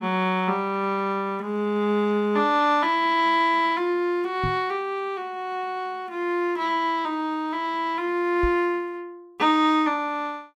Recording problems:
microphone bump; at 4.5 s and at 8.5 s; peak -2 dB vs average level

